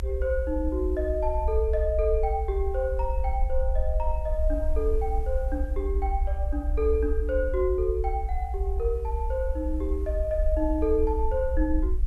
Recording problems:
background hiss; slope -6 dB per octave, SNR 28 dB
low-frequency rumble; below 64 Hz, SNR 1 dB

